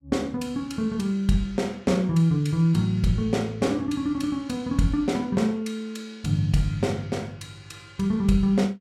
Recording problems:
none

